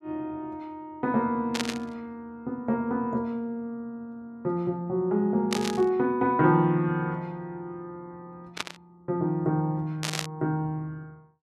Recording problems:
static burst; 4 times, first at 1.5 s; peak +3 dB vs average level

